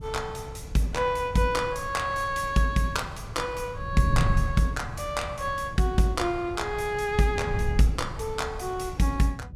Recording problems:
wind on the microphone; below 140 Hz, SNR 8 dB

